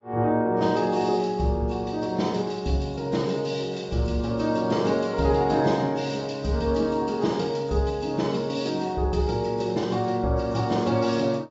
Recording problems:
lossy compression; AAC, log-spectral distance 3 dB, nothing above 7.3 kHz

